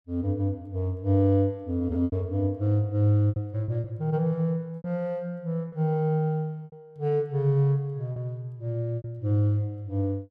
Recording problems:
lost packets; 6% of the sound replaced, filled with repeated pitch periods

